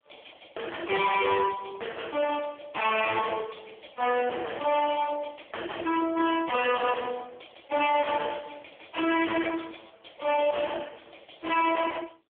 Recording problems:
telephone audio; 280 Hz to 3.4 kHz, AMR-NB
distorted audio; hard clipping, signal-to-distortion ratio 6 dB

